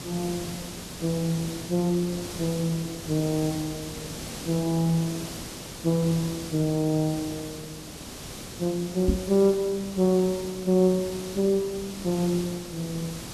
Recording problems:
background hiss; SNR 11 dB
microphone bump; at 9 s; peak +6 dB vs average level

